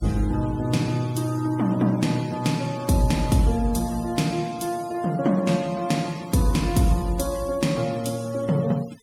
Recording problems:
noise reduction artefacts; signal-to-artefact ratio 20 dB

